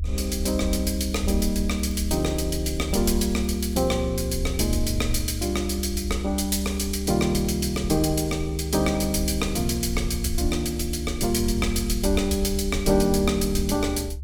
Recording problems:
rumble; below 70 Hz, strongest tone 68 Hz, SNR 6 dB
crackling; from 1 to 4 s; loose cable, SNR 30 dB

